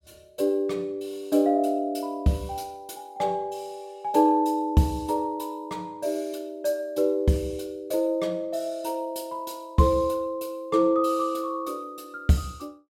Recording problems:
none

